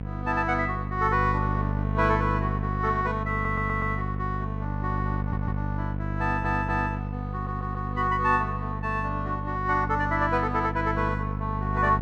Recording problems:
mains hum; 50 Hz, harmonics up to 750 Hz, SNR 3 dB
stutter; 4 times, first at 3.5 s

